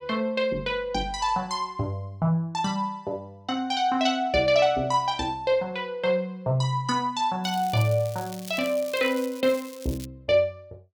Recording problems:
crackle; from 7.5 to 10 s; loose cable, SNR 17 dB

